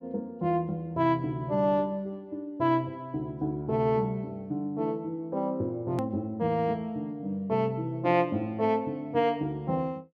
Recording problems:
click at an edit; at 6 s

